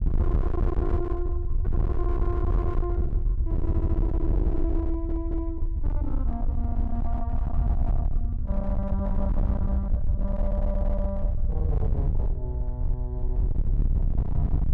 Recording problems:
distortion; hard clipping, signal-to-distortion ratio 6 dB
rumble; below 74 Hz, SNR -6 dB
audio stuttering; at 3.5 s, at 5 s and at 10 s

